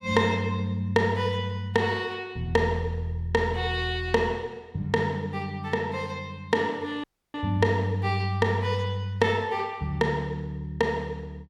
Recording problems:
audio cutting out; at 7 s

